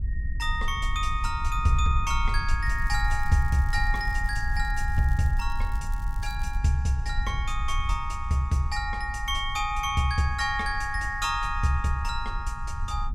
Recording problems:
wind noise; below 62 Hz, SNR 4 dB
crackling; from 2.5 to 6.5 s; loose cable, SNR 25 dB

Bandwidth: 16 kHz